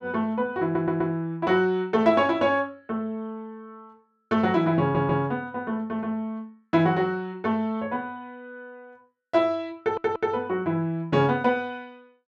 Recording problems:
stutter; at 0.5 s, at 5 s and at 10 s

